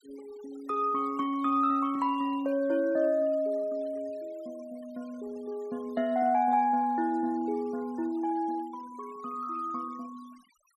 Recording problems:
denoising artefacts; signal-to-artefact ratio 27 dB

